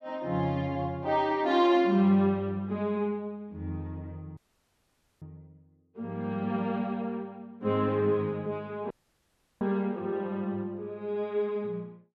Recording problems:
dropout; at 4.5 s for 1 s and at 9 s for 0.5 s

